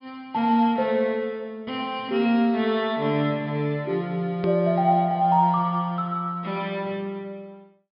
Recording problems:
treble cut off; nothing above 5.5 kHz
edit click; at 4.5 s

